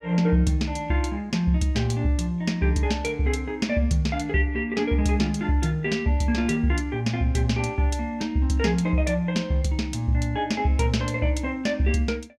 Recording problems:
none

